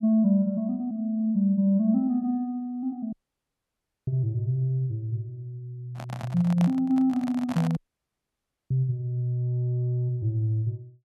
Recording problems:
dropout; at 3 s for 1 s and at 8 s for 1 s
handling noise; from 6 to 8 s; peak -3 dB vs average level

